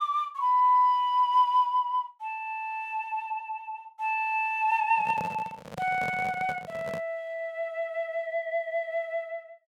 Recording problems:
microphone handling noise; from 5 to 7 s; peak -6 dB vs average level

